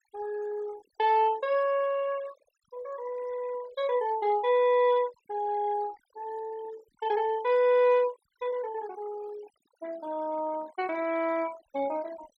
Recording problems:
denoising artefacts; signal-to-artefact ratio 21 dB

